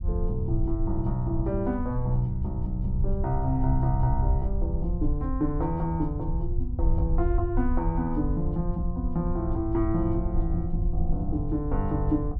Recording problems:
low-frequency rumble; below 74 Hz, SNR 2 dB

